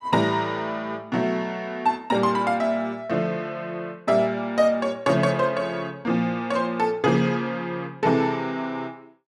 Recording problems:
none

